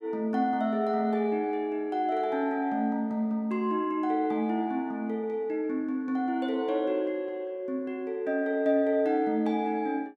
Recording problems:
none

